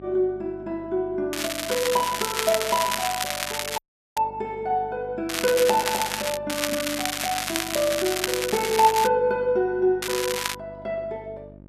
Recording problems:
electrical hum; 50 Hz, harmonics up to 900 Hz, SNR 20 dB
crackling; 4 times, first at 1.5 s; loose cable, SNR 3 dB
audio cutting out; at 4 s

